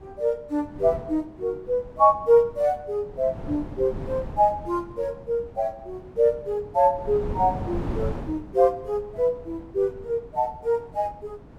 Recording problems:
wind on the microphone; below 330 Hz, SNR 14 dB

